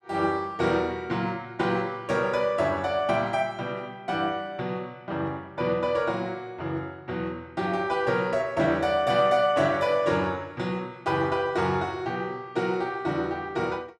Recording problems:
none

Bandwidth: 13.5 kHz